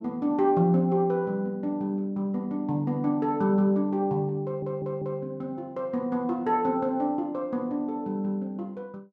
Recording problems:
audio stuttering; at 4.5 s

